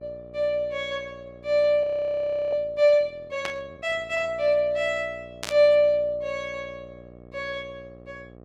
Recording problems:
hum; 60 Hz, harmonics up to 1.3 kHz, SNR 23 dB
audio freezing; at 2 s for 0.5 s
burst of static; at 3.5 s and at 5.5 s; peak -2 dB vs average level

